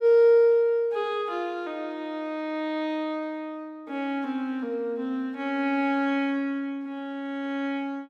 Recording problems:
none

